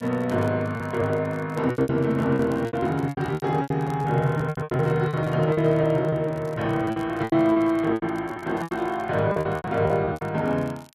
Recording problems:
crackle; vinyl, SNR 29 dB
lost packets; 16% of the sound replaced, filled with repeated pitch periods

